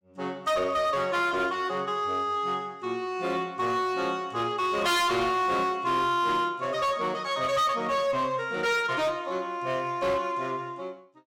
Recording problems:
distortion; hard clipping, signal-to-distortion ratio 10 dB

